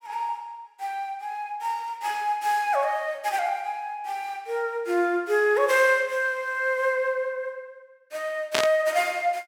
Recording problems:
burst of static; at 8.5 s; peak +5 dB vs average level

